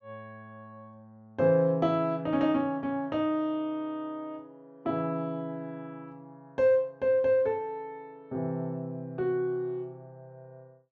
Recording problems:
low-pass filter; nothing above 8 kHz

